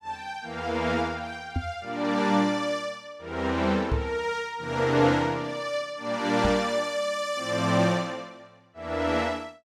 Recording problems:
microphone thump; at 1.5 s, at 4 s and at 6.5 s; peak +2 dB vs average level

